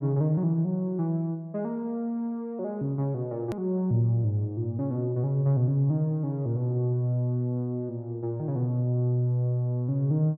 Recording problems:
click at an edit; at 3.5 s

